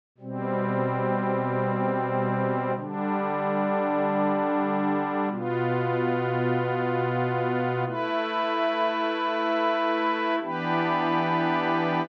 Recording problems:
none

